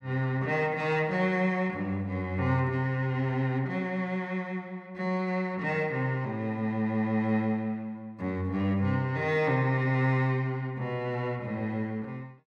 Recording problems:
none

